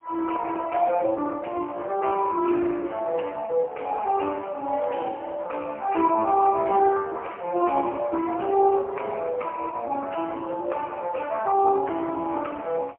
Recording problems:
telephone audio; 320 Hz to 2.3 kHz, AMR-NB, then MP3

